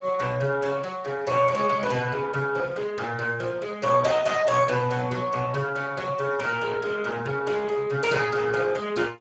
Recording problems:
lossy compression; Speex, log-spectral distance 4 dB, nothing above 7.6 kHz

